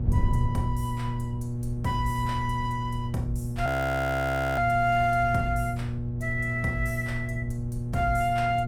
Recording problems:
hum; 60 Hz, harmonics up to 600 Hz, SNR 4 dB
wind noise; below 110 Hz, SNR 8 dB
frozen audio; at 3.5 s for 1 s

